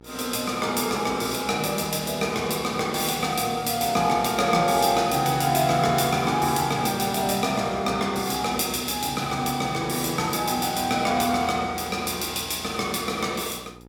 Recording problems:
mains hum; 60 Hz, harmonics up to 1.7 kHz, SNR 23 dB

